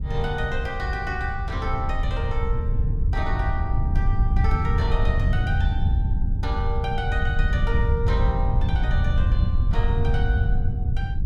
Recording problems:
wind noise; below 94 Hz, SNR -6 dB

